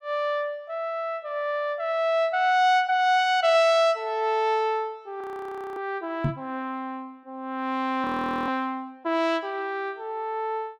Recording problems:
frozen audio; at 5 s for 0.5 s and at 8 s
microphone bump; at 6 s; peak +3 dB vs average level

